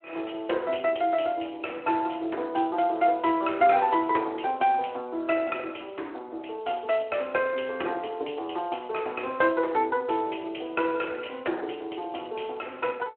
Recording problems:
phone line; 280 Hz to 3.2 kHz, Speex

